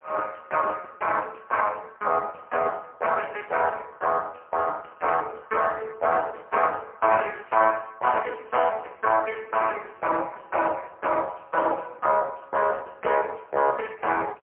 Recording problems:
phone line; 370 Hz to 3 kHz, AMR-NB, then MP3

